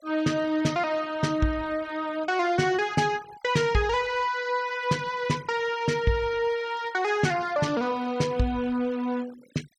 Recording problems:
noise reduction artefacts; signal-to-artefact ratio 19 dB

